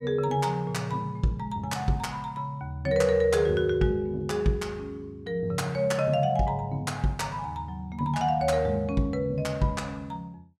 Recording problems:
none

